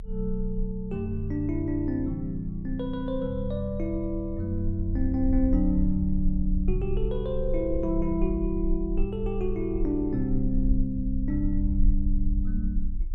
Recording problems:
low-frequency rumble; below 44 Hz, strongest tone 28 Hz, SNR 5 dB

